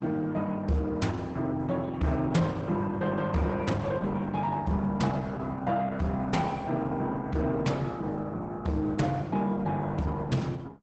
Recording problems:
codec artefacts; Opus, log-spectral distance 2 dB, nothing above 8 kHz
distortion; soft clipping, signal-to-distortion ratio 12 dB

